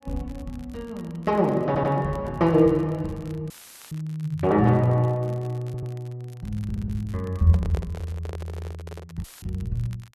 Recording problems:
crackling; vinyl, SNR 29 dB
stutter; 4 times, first at 1.5 s
audio cutting out; at 3.5 s and at 9 s; filled with static
handling noise; from 7.5 to 9 s; peak -7 dB vs average level

